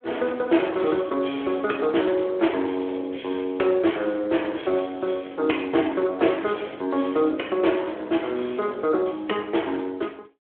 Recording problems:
telephone audio; 280 Hz to 3.3 kHz, Speex

